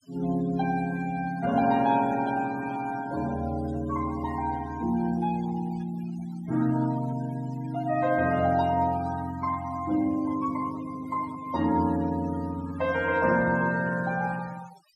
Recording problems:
noise reduction artefacts; signal-to-artefact ratio 18 dB

